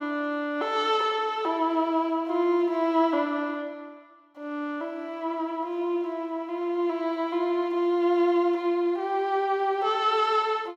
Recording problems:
none

